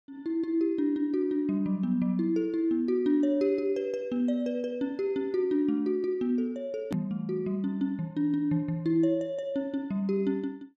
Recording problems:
edit click; at 7 s

